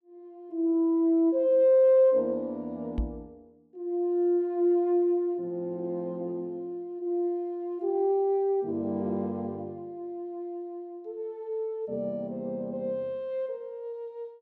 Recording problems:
microphone thump; at 3 s; peak +1 dB vs average level

